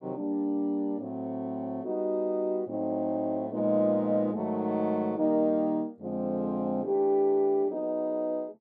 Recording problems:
none

